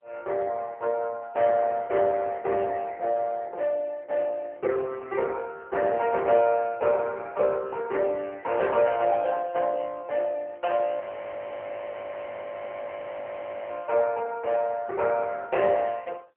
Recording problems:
phone line; 370 Hz to 3.2 kHz, AMR-NB
audio freezing; at 11 s for 2.5 s

